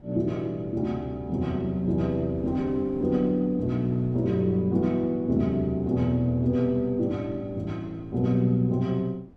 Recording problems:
wind on the microphone; below 330 Hz, SNR 22 dB

